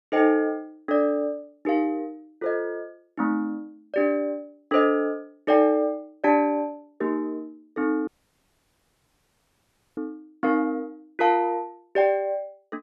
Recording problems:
audio cutting out; at 8 s for 2 s

